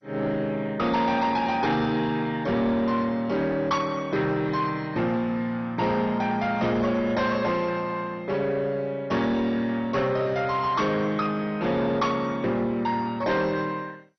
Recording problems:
codec artefacts; MP2, log-spectral distance 2 dB, nothing above 5.8 kHz
distorted audio; soft clipping, signal-to-distortion ratio 12 dB

